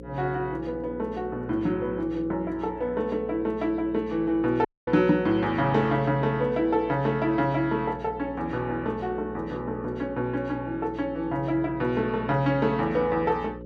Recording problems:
electrical hum; 60 Hz, harmonics up to 540 Hz, SNR 14 dB
audio cutting out; at 4.5 s

